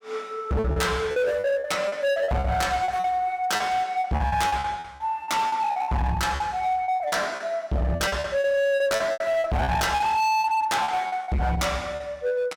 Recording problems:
distorted audio; hard clipping, signal-to-distortion ratio 7 dB
packet loss; 14% of the sound replaced, filled with repeated pitch periods

